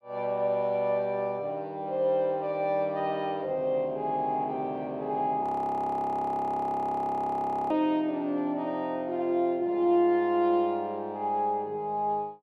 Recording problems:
audio freezing; at 5.5 s for 2.5 s

